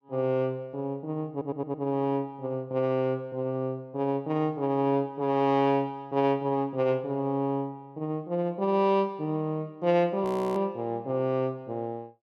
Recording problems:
audio stuttering; at 1.5 s
audio freezing; at 10 s

